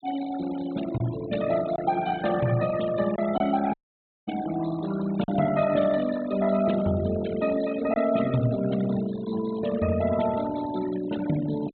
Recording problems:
treble cut off; nothing above 4 kHz
noise reduction artefacts; signal-to-artefact ratio 14 dB
packet loss; 1.2% of the sound replaced, filled with silence
dropout; at 3.5 s for 0.5 s

